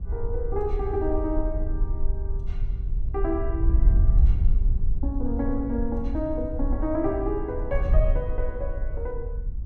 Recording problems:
wind noise; below 62 Hz, SNR -2 dB

